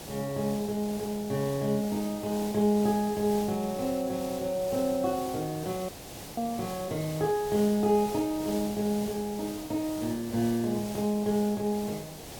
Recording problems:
hiss; SNR 12 dB
audio cutting out; at 6 s

